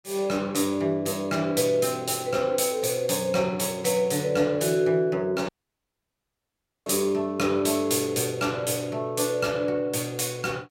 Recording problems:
dropout; at 5.5 s for 1.5 s

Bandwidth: 16 kHz